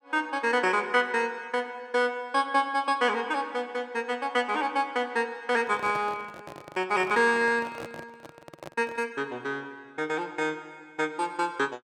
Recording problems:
handling noise; from 5.5 to 9 s; peak -8 dB vs average level

